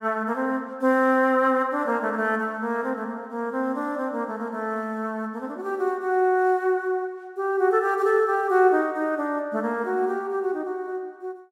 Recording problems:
none

